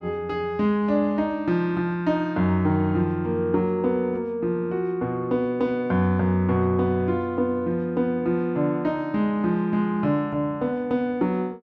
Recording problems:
none

